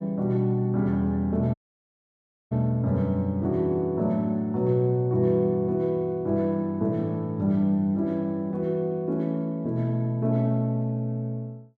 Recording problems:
dropout; at 1.5 s for 1 s

